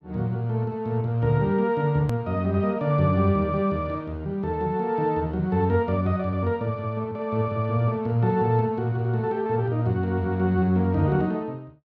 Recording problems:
click at an edit; at 2 s

